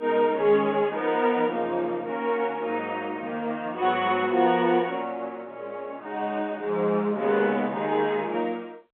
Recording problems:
telephone audio; 300 Hz to 3.5 kHz, G.711

